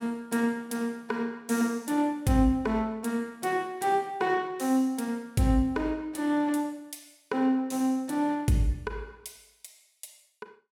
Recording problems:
none

